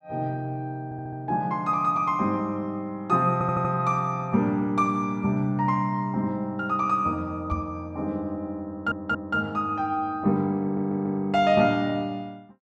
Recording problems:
stutter; 4 times, first at 1 s
knock on the microphone; at 7.5 s; peak -1 dB vs average level

